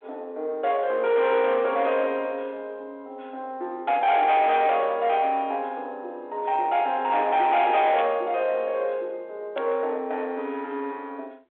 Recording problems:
telephone audio; 300 Hz to 3.8 kHz, G.726
distortion; soft clipping, signal-to-distortion ratio 11 dB
burst of static; at 8 s and at 9.5 s; peak -7 dB vs average level

